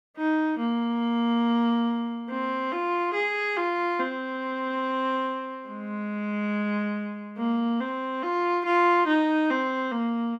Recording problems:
none

